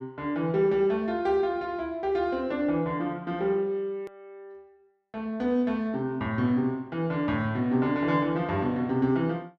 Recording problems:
hard cut with a click; at 4 s

